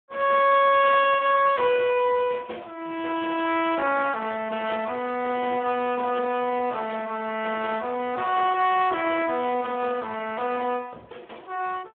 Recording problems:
phone line; 280 Hz to 3.1 kHz, Speex

